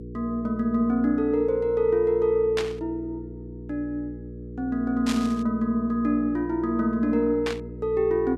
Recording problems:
hum; 60 Hz, harmonics up to 480 Hz, SNR 13 dB
burst of static; at 2.5 s, at 5 s and at 7.5 s; peak -2 dB vs average level

